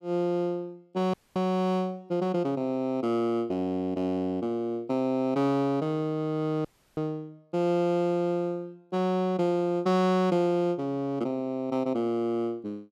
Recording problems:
audio cutting out; at 1 s and at 6.5 s

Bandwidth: 14 kHz